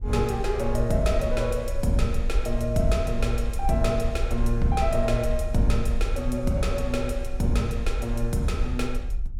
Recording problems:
low-frequency rumble; below 50 Hz, strongest tone 22 Hz, SNR 5 dB

